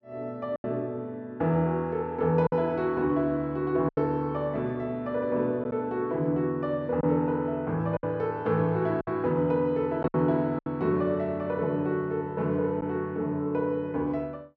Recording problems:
lost packets; 4% of the sound replaced, filled with silence

